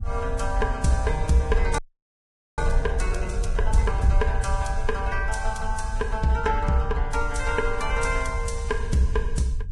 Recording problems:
codec artefacts; Vorbis, log-spectral distance 2 dB, nothing above 10.4 kHz
low-frequency rumble; below 62 Hz, SNR 2 dB
frozen audio; at 2 s for 1 s

